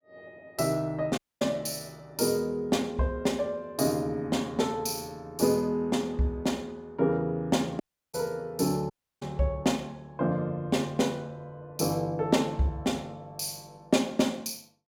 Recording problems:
dropout; at 1 s, at 8 s and at 9 s

